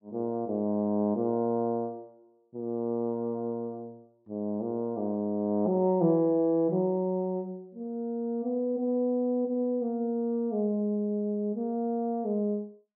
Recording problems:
none

